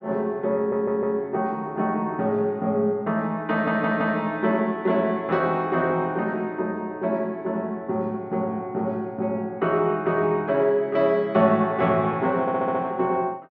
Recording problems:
stutter; at 0.5 s, at 3.5 s and at 12 s

